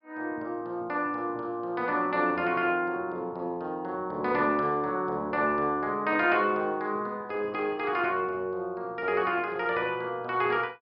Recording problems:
low-pass filter; nothing above 5.5 kHz

